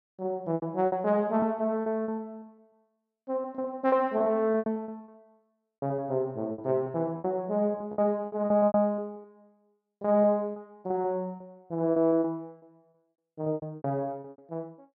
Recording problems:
lost packets; 17% of the sound replaced, filled with repeated pitch periods

